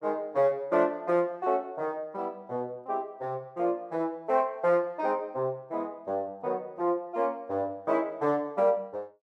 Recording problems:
none

